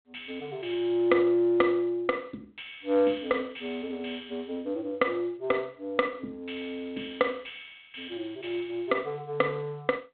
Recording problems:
telephone audio; 170 Hz to 3.7 kHz, G.726

